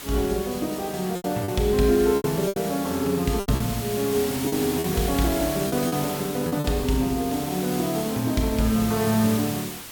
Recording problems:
background hiss; slope -1 dB per octave, SNR 9 dB
packet loss; 7% of the sound replaced, filled with repeated pitch periods

